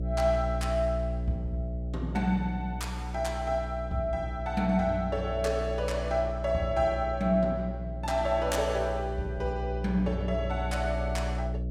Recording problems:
hum; 60 Hz, harmonics up to 660 Hz, SNR 5 dB

